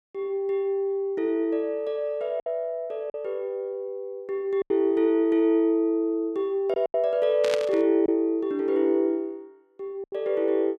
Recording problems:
packet loss; 4% of the sound replaced, filled with silence
static burst; at 7.5 s; peak -2 dB vs average level

